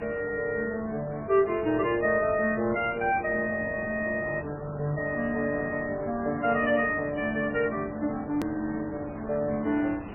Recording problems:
lossy codec; MP3, log-spectral distance 4 dB, nothing above 2.5 kHz
hum; 50 Hz, harmonics up to 1.2 kHz, SNR 21 dB
background hiss; SNR 14 dB
click at an edit; at 8.5 s

